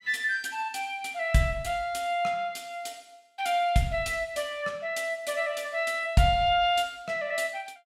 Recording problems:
none

